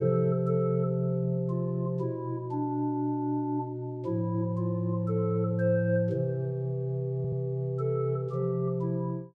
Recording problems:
stutter; at 7 s

